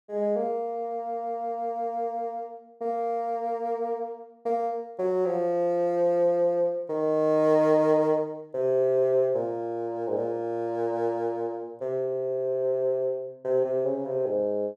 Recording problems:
none

